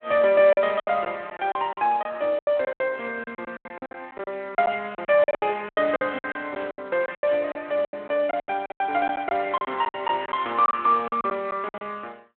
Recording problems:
telephone audio; 240 Hz to 3.5 kHz, Speex
packet loss; 17% of the sound replaced, filled with silence
static burst; at 6.5 s; peak -14 dB vs average level

